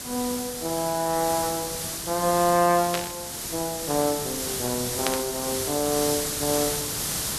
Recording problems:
background hiss; SNR 2 dB
burst of static; at 3 s and at 5 s; peak +3 dB vs average level

